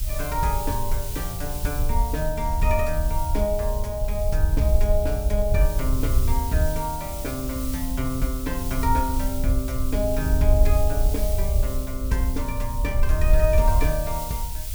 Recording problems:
hiss; SNR 8 dB
rumble; below 66 Hz, SNR -2 dB

